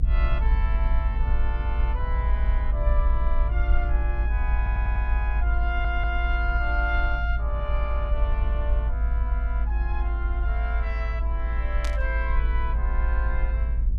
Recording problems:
hum; 60 Hz, harmonics up to 960 Hz, SNR 17 dB
rumble; below 56 Hz, strongest tone 54 Hz, SNR -7 dB
audio stuttering; at 4.5 s and at 5.5 s
burst of static; at 12 s; peak 0 dB vs average level

